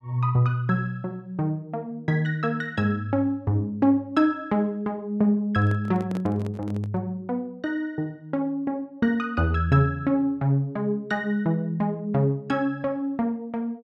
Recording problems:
handling noise; from 5.5 to 7 s; peak -7 dB vs average level

